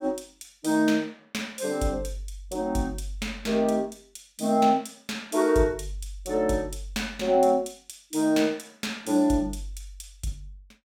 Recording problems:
none

